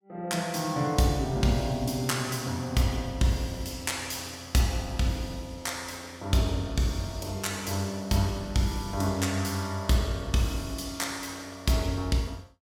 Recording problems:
none

